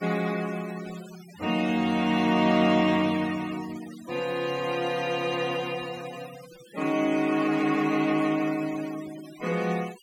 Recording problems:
denoising artefacts; signal-to-artefact ratio 18 dB

